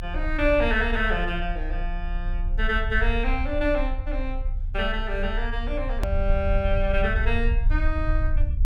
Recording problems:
rumble; below 56 Hz, strongest tone 30 Hz, SNR 2 dB
hard cut with a click; at 6 s

